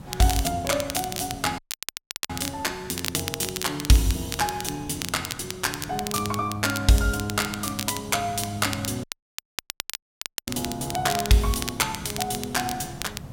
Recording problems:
background hiss; slope -6 dB per octave, SNR 15 dB
crackle; vinyl, SNR 7 dB
audio cutting out; at 1.5 s for 0.5 s and at 9 s for 1.5 s

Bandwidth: 16.5 kHz